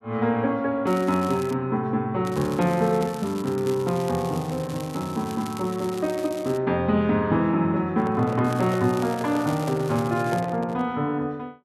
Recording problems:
crackling; at 1 s, from 2.5 to 6.5 s and from 8.5 to 10 s; loose cable, SNR 18 dB
handling noise; from 8 to 11 s; peak -6 dB vs average level

